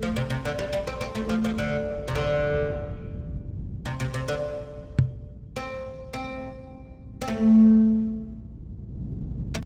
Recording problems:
lossy codec; Opus, log-spectral distance 3 dB, nothing above 18.5 kHz
rumble; below 150 Hz, SNR 12 dB
microphone bump; at 5 s; peak +9 dB vs average level

